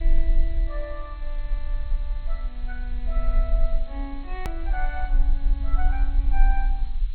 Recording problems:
lossy codec; MP2, log-spectral distance 2 dB, nothing above 17.7 kHz
background hiss; SNR 17 dB
low-frequency rumble; below 40 Hz, SNR -10 dB
click at an edit; at 4.5 s

